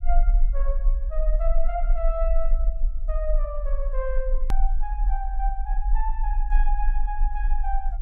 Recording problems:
rumble; below 38 Hz, strongest tone 22 Hz, SNR -7 dB
hard cut with a click; at 4.5 s

